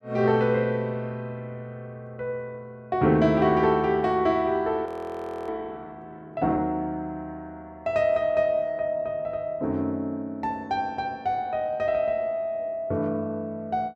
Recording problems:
audio freezing; at 5 s for 0.5 s

